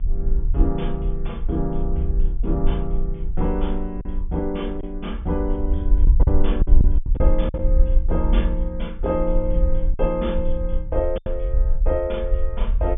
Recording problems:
treble cut off; nothing above 3.6 kHz
low-frequency rumble; below 48 Hz, strongest tone 22 Hz, SNR -3 dB
lost packets; 4% of the sound replaced, filled with silence

